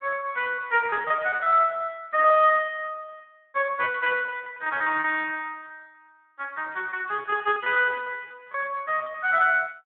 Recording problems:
telephone audio; 340 Hz to 3.7 kHz, Speex
lost packets; 15% of the sound replaced, filled with repeated pitch periods

